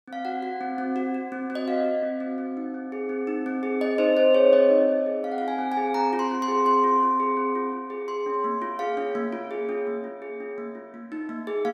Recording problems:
none

